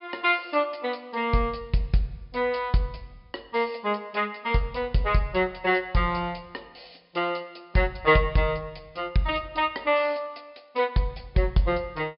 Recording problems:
low-pass filter; nothing above 5.5 kHz

